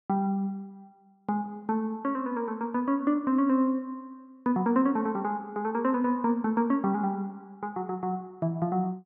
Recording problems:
none

